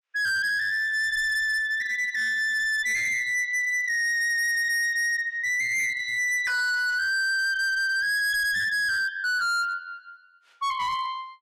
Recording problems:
distortion; hard clipping, signal-to-distortion ratio 7 dB

